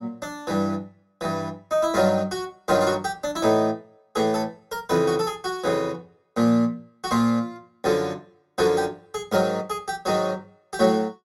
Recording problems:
none

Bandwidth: 16 kHz